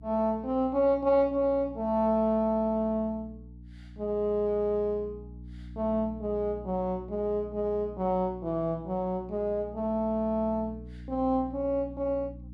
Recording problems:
electrical hum; 60 Hz, harmonics up to 300 Hz, SNR 17 dB

